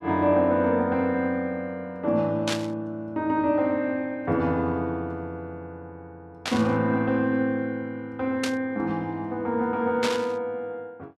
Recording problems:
burst of static; 4 times, first at 2.5 s; peak +1 dB vs average level

